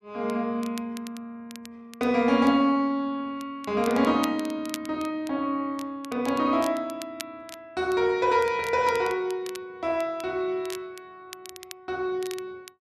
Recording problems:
crackle; vinyl, SNR 18 dB

